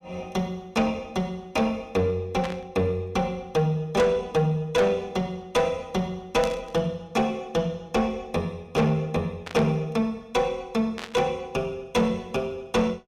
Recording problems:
distorted audio; soft clipping, signal-to-distortion ratio 11 dB
burst of static; 4 times, first at 2.5 s; peak -4 dB vs average level

